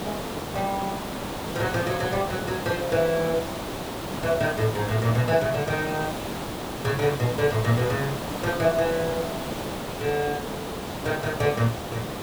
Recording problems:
hiss; slope -6 dB per octave, SNR 5 dB

